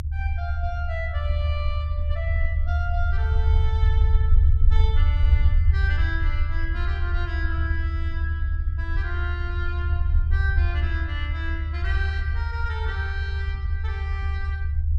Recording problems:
low-frequency rumble; below 76 Hz, SNR -9 dB

